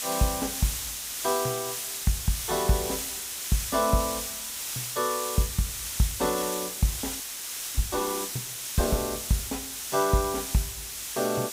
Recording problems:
hiss; slope +2 dB per octave, SNR 2 dB
frozen audio; at 7 s for 0.5 s

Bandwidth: 15.5 kHz